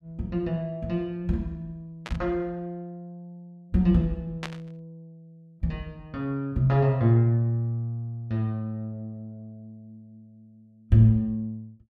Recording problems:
burst of static; at 2 s and at 4.5 s; peak -4 dB vs average level

